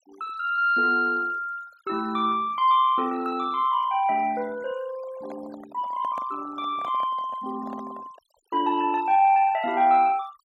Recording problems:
noise reduction artefacts; signal-to-artefact ratio 24 dB
handling noise; from 5 to 8.5 s; peak -11 dB vs average level

